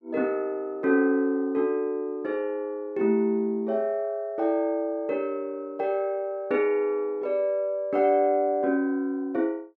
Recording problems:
none

